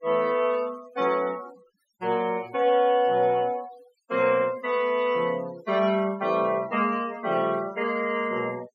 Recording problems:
denoising artefacts; signal-to-artefact ratio 21 dB

